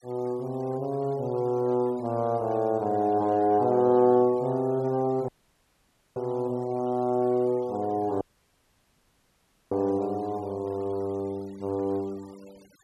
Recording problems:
denoising artefacts; signal-to-artefact ratio 28 dB
dropout; at 5.5 s for 1 s and at 8 s for 1.5 s

